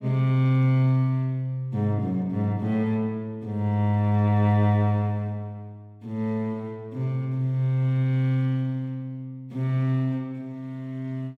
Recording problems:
none

